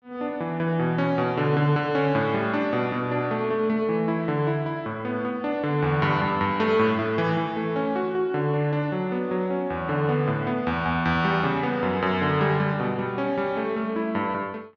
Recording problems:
low-pass filter; nothing above 6.9 kHz

